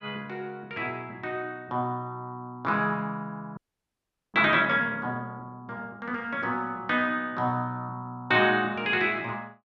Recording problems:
audio freezing; at 3.5 s for 1 s

